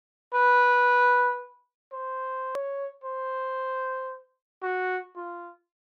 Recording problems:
hard cut with a click; at 2.5 s

